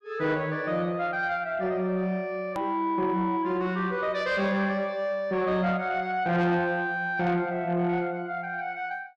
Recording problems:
distorted audio; soft clipping, signal-to-distortion ratio 11 dB
hard cut with a click; at 2.5 s

